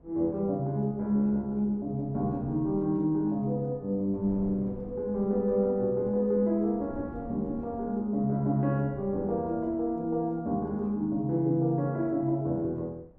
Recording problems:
wind noise; below 310 Hz, SNR 20 dB

